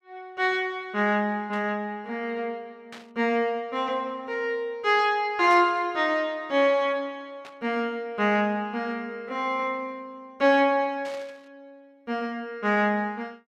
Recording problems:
burst of static; 5 times, first at 1.5 s; peak -12 dB vs average level

